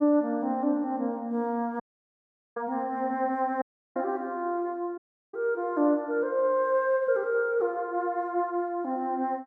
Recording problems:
dropout; at 2 s for 1 s, at 3.5 s and at 5 s

